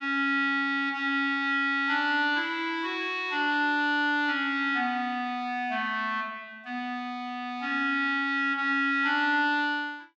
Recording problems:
none

